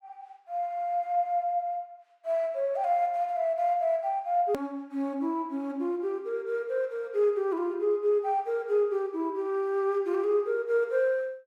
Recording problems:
click at an edit; at 4.5 s

